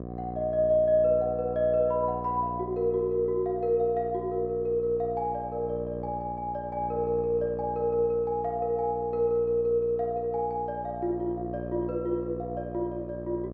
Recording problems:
hum; 60 Hz, harmonics up to 1.2 kHz, SNR 11 dB

